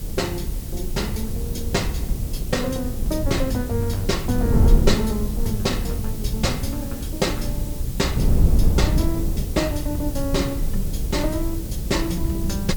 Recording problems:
hiss; slope +3 dB per octave, SNR 11 dB
low-frequency rumble; below 80 Hz, SNR 8 dB
wind on the microphone; below 110 Hz, SNR 0 dB

